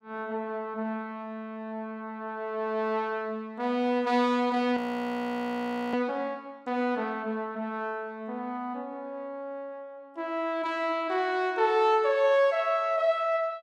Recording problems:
frozen audio; at 5 s for 1 s

